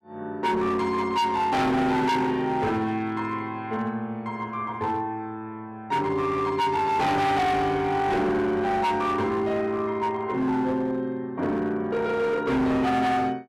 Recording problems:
distorted audio; hard clipping, signal-to-distortion ratio 7 dB

